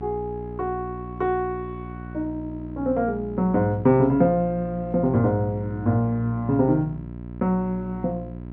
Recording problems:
hum; 60 Hz, harmonics up to 1 kHz, SNR 12 dB

